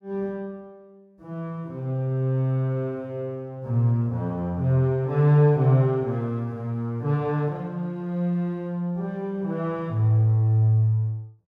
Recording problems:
none

